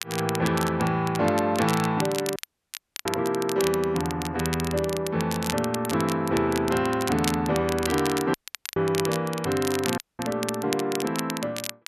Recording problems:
crackling; vinyl, SNR 9 dB
audio cutting out; at 2.5 s for 0.5 s, at 8.5 s and at 10 s

